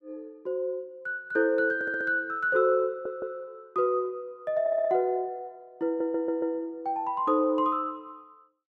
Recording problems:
stutter; 4 times, first at 1.5 s

